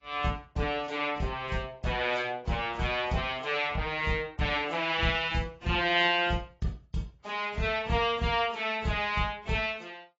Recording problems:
codec artefacts; AAC, then AAC, log-spectral distance 3 dB, nothing above 7.3 kHz

